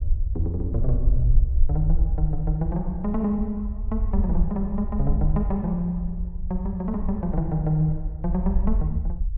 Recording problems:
rumble; below 62 Hz, SNR 1 dB

